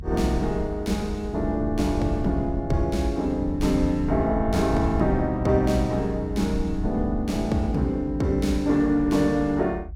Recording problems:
low-frequency rumble; below 84 Hz, SNR 9 dB

